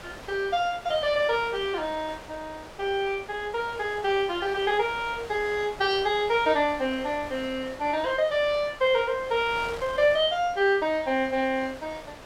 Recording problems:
wind noise; below 2.3 kHz, SNR 17 dB

